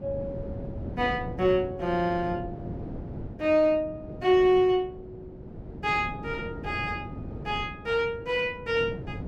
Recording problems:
wind noise; below 320 Hz, SNR 12 dB

